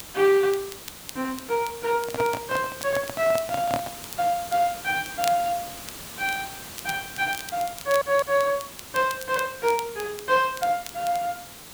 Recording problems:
hiss; slope -2 dB per octave, SNR 13 dB
crackling; vinyl, SNR 16 dB
microphone handling noise; from 2 to 4 s; peak +1 dB vs average level
audio stuttering; at 8 s

